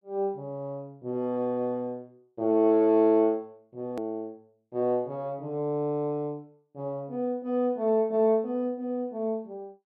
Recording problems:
edit click; at 4 s

